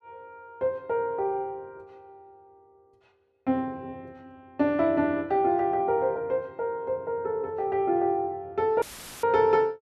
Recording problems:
audio cutting out; at 9 s; filled with static

